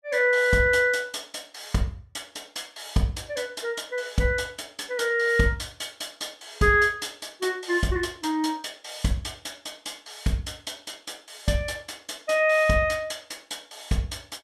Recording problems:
none

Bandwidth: 14.5 kHz